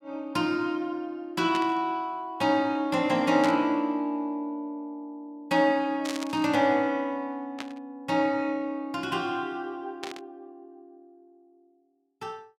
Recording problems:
burst of static; 5 times, first at 1.5 s; peak -3 dB vs average level

